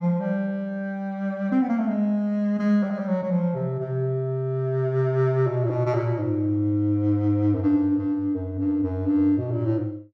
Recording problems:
none

